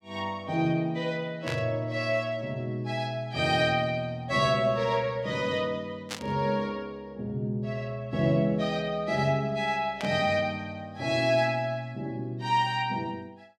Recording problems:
static burst; at 1.5 s, at 6 s and at 10 s; peak -2 dB vs average level

